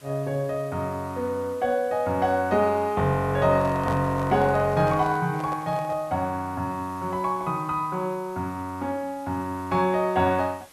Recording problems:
hiss; slope -2 dB per octave, SNR 25 dB
handling noise; from 3.5 to 6 s; peak -5 dB vs average level

